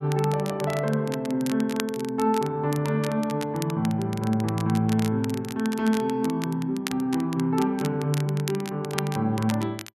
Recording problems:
crackling; vinyl, SNR 14 dB

